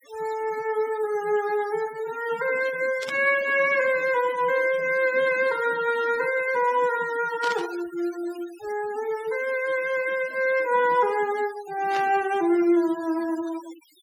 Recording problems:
noise reduction artefacts; signal-to-artefact ratio 19 dB
static burst; at 3 s, at 7.5 s and at 12 s; peak -7 dB vs average level

